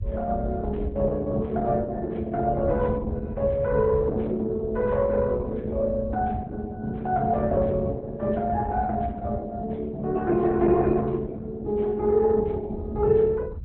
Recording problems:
lossy codec; Opus, log-spectral distance 2 dB, nothing above 3.9 kHz
rumble; below 92 Hz, SNR 8 dB

